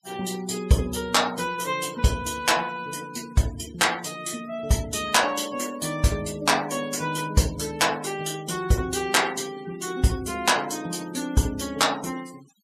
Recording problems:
noise reduction artefacts; signal-to-artefact ratio 18 dB

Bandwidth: 14.5 kHz